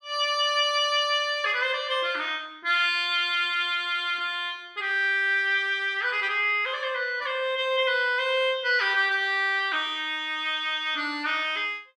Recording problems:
none

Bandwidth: 14.5 kHz